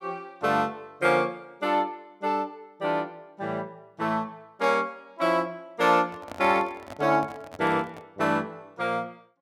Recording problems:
microphone handling noise; from 6 to 8 s; peak -8 dB vs average level

